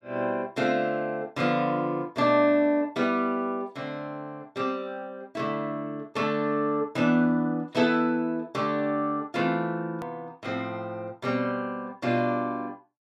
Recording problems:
click at an edit; at 10 s

